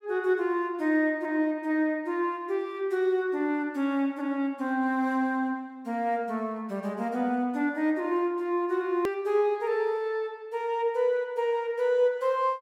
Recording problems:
hard cut with a click; at 9 s

